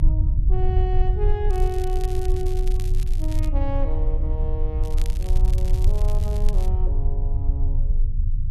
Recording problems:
low-frequency rumble; below 60 Hz, strongest tone 26 Hz, SNR -9 dB
crackle; from 1.5 to 3.5 s and from 5 to 6.5 s; loose cable, SNR 12 dB

